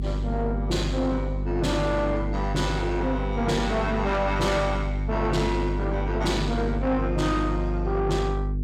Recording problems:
distortion; soft clipping, signal-to-distortion ratio 11 dB
electrical hum; 50 Hz, harmonics up to 350 Hz, SNR 3 dB

